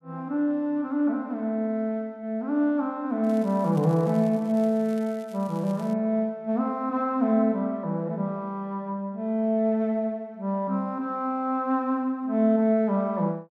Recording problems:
crackle; from 3 to 6 s; loose cable, SNR 27 dB

